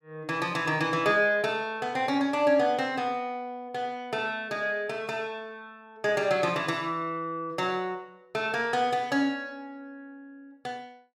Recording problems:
none

